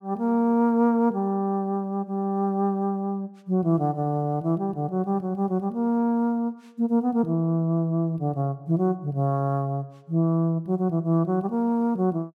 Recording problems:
none

